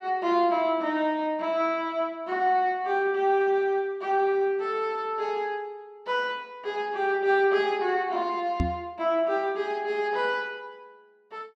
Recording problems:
knock on the microphone; at 8.5 s; peak +3 dB vs average level

